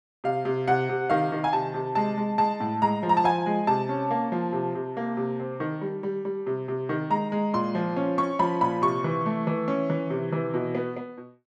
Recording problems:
none

